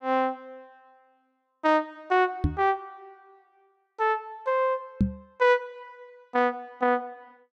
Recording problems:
microphone bump; at 2.5 s and at 5 s; peak +7 dB vs average level

